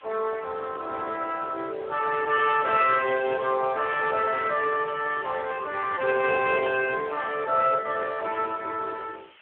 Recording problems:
telephone audio; 300 Hz to 3.1 kHz, Speex
background hiss; SNR 27 dB

